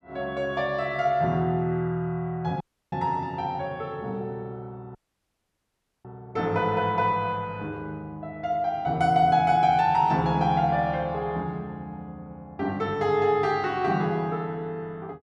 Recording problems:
audio cutting out; at 2.5 s and at 5 s for 1 s

